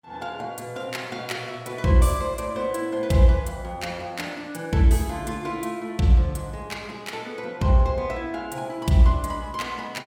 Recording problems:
none

